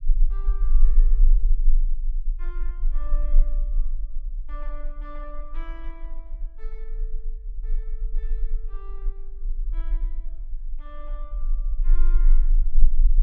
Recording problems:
rumble; below 30 Hz, strongest tone 24 Hz, SNR -20 dB

